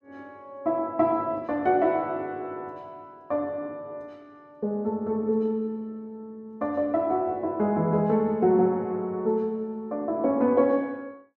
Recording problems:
none

